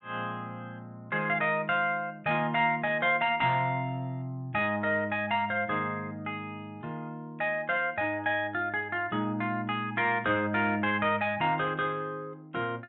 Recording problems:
treble cut off; nothing above 4.1 kHz

